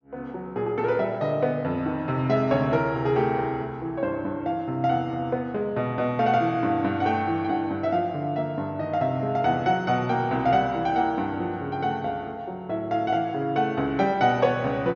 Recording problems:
treble missing; nothing above 6.7 kHz

